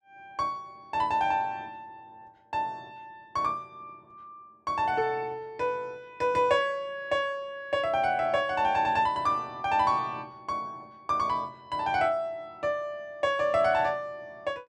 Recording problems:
none

